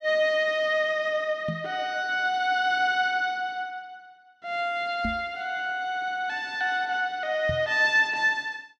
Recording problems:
microphone bump; at 1.5 s, at 5 s and at 7.5 s; peak -3 dB vs average level

